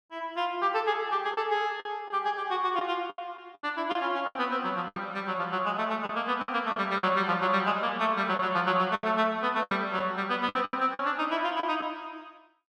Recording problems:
packet loss; 9% of the sound replaced, filled with the last packet

